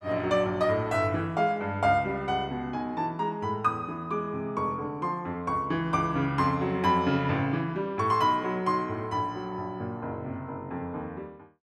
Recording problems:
none

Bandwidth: 12.5 kHz